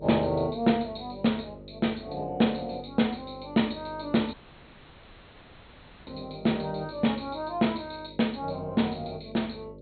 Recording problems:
low-pass filter; nothing above 4.3 kHz
hum; 50 Hz, harmonics up to 600 Hz, SNR 18 dB
audio cutting out; at 4.5 s for 1.5 s

